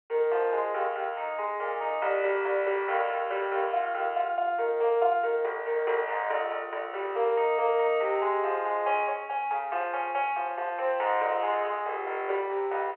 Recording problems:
phone line; 370 Hz to 3.1 kHz, G.711

